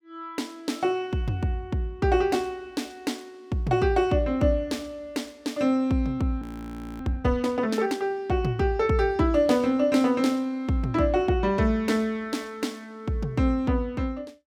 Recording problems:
frozen audio; at 6.5 s for 0.5 s

